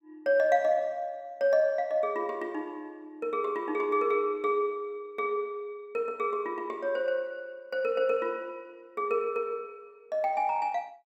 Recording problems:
none

